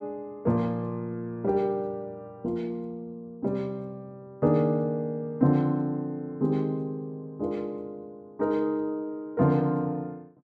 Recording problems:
none

